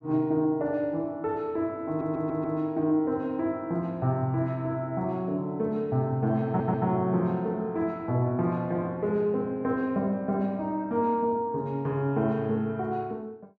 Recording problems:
stutter; at 2 s and at 6.5 s

